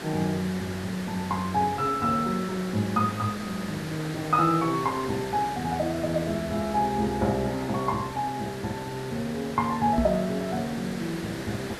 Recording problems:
background hiss; SNR 10 dB
microphone thump; at 10 s; peak +5 dB vs average level

